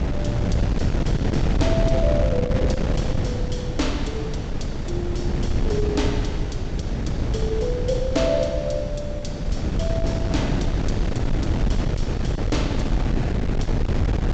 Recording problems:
low-pass filter; nothing above 8 kHz
wind noise; below 200 Hz, SNR -4 dB

